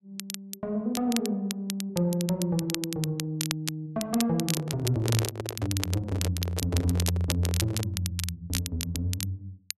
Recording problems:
crackle; vinyl, SNR 5 dB
handling noise; from 4.5 to 8 s; peak 0 dB vs average level

